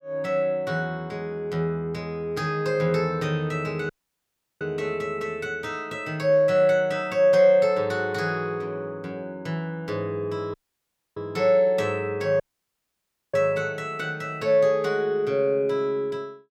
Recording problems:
dropout; at 4 s for 0.5 s, at 11 s for 0.5 s and at 12 s for 1 s

